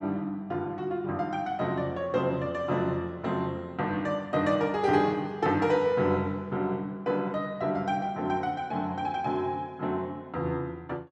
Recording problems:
none

